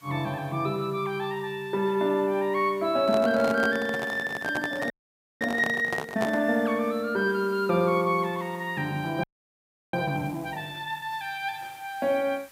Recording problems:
background hiss; SNR 26 dB
microphone handling noise; from 3 to 6.5 s; peak 0 dB vs average level
frozen audio; at 5 s for 0.5 s and at 9 s for 0.5 s

